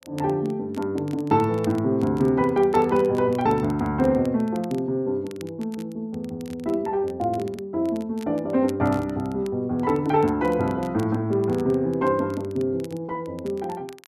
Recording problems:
crackle; vinyl, SNR 26 dB

